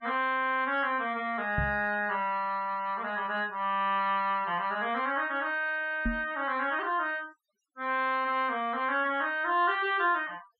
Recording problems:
noise reduction artefacts; signal-to-artefact ratio 25 dB
microphone bump; at 1.5 s and at 6 s; peak +1 dB vs average level

